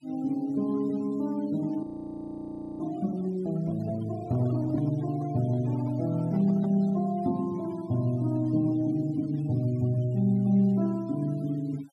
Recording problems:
denoising artefacts; signal-to-artefact ratio 24 dB
audio freezing; at 2 s for 1 s
handling noise; from 4 to 7 s; peak -13 dB vs average level

